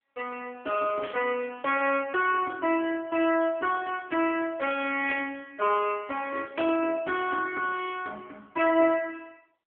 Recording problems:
telephone audio; 240 Hz to 3.3 kHz, AMR-NB
static burst; at 1 s, at 5 s and at 6.5 s; peak -4 dB vs average level

